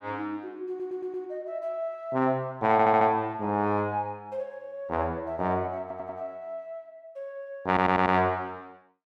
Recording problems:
stutter; 4 times, first at 0.5 s

